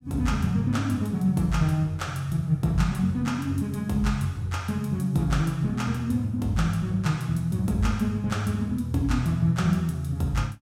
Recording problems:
none

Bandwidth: 16.5 kHz